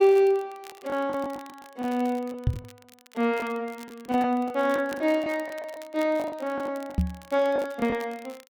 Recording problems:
crackle; vinyl, SNR 23 dB
lost packets; 10% of the sound replaced, filled with the last packet
knock on the microphone; at 2.5 s and at 7 s; peak +6 dB vs average level

